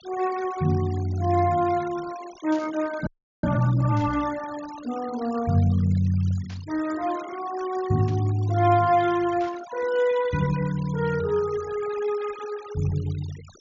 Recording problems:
treble missing; nothing above 7.2 kHz
denoising artefacts; signal-to-artefact ratio 19 dB
static burst; 5 times, first at 2.5 s; peak -15 dB vs average level
frozen audio; at 3 s

